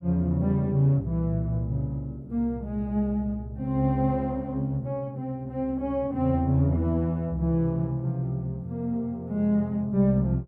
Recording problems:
none

